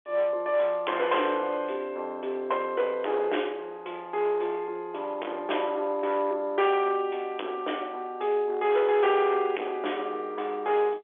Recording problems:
telephone audio; 300 Hz to 3.5 kHz, G.711
distortion; hard clipping, uneven, signal-to-distortion ratio 9 dB

